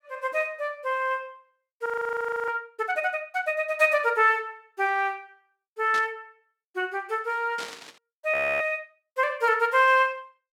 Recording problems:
frozen audio; at 2 s for 0.5 s and at 8.5 s
static burst; at 6 s and at 7.5 s; peak -7 dB vs average level

